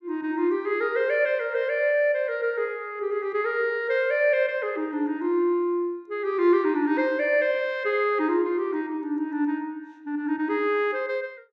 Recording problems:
none

